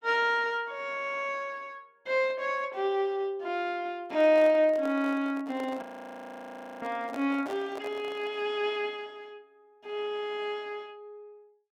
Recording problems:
microphone handling noise; from 4 to 8.5 s; peak -7 dB vs average level
audio freezing; at 6 s for 1 s

